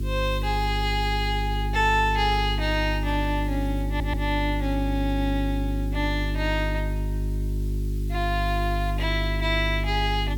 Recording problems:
hum; 50 Hz, harmonics up to 400 Hz, SNR 2 dB
background hiss; slope +3 dB per octave, SNR 23 dB
stutter; at 4 s

